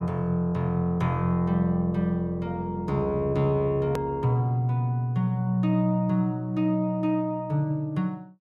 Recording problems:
click at an edit; at 4 s

